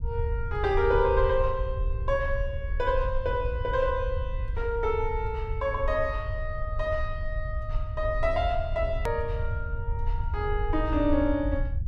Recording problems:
low-frequency rumble; below 76 Hz, SNR 4 dB
edit click; at 9 s

